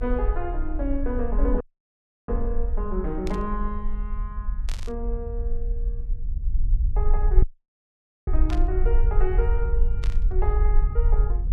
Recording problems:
low-frequency rumble; below 48 Hz, SNR -5 dB
audio cutting out; at 1.5 s for 0.5 s and at 7.5 s for 1 s
static burst; 4 times, first at 3.5 s; peak -3 dB vs average level

